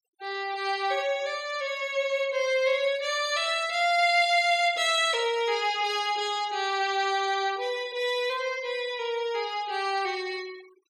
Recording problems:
noise reduction artefacts; signal-to-artefact ratio 22 dB

